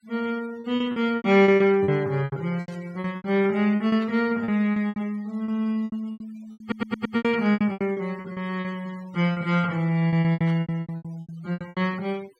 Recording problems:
denoising artefacts; signal-to-artefact ratio 25 dB
packet loss; 19% of the sound replaced, filled with repeated pitch periods
burst of static; at 2.5 s, at 4 s and at 10 s; peak -17 dB vs average level
stutter; at 6.5 s

